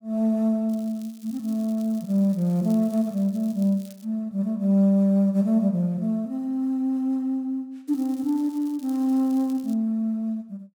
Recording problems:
crackle; from 0.5 to 4 s and from 8 to 9.5 s; loose cable, SNR 27 dB

